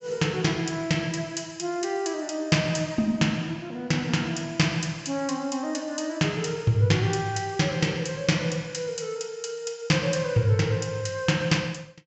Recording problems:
treble missing; nothing above 7.7 kHz

